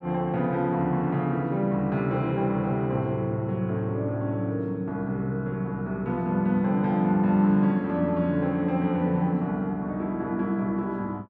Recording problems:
none

